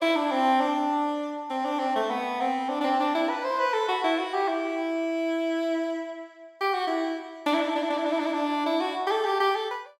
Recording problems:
none

